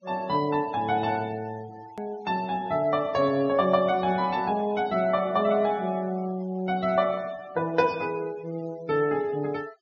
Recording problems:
treble missing; nothing above 6.7 kHz
noise reduction artefacts; signal-to-artefact ratio 24 dB
hard cut with a click; at 2 s

